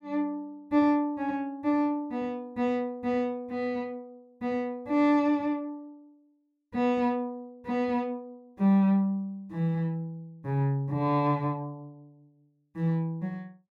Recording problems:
none

